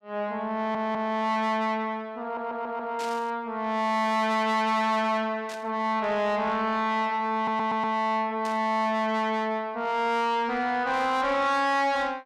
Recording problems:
distortion; soft clipping, signal-to-distortion ratio 10 dB
stutter; at 0.5 s, at 2 s and at 7.5 s
burst of static; at 3 s, at 5.5 s and at 8.5 s; peak -9 dB vs average level

